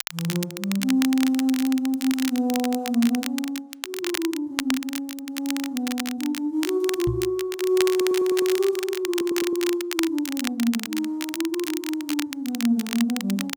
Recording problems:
crackle; vinyl, SNR 8 dB
knock on the microphone; at 7 s; peak +1 dB vs average level
stutter; at 8 s and at 9 s

